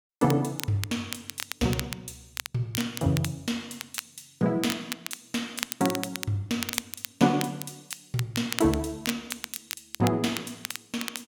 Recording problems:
crackling; vinyl, SNR 7 dB

